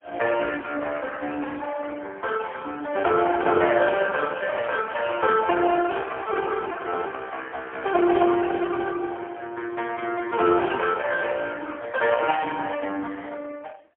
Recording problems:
phone line; 220 Hz to 3.5 kHz, AMR-NB, then MP3

